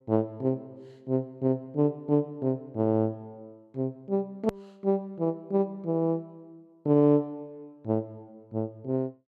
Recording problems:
edit click; at 4.5 s

